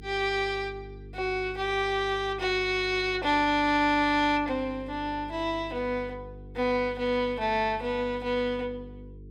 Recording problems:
hum; 50 Hz, harmonics up to 450 Hz, SNR 18 dB

